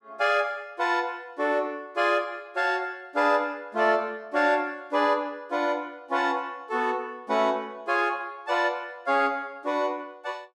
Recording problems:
none

